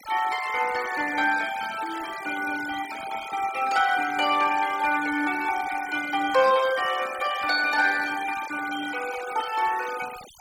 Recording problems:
noise reduction artefacts; signal-to-artefact ratio 14 dB

